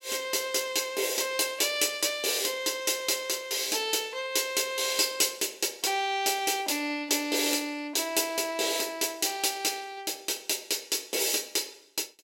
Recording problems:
none

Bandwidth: 16.5 kHz